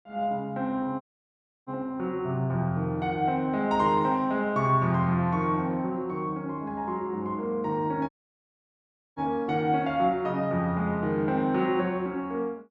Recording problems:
audio cutting out; at 1 s for 0.5 s and at 8 s for 1 s

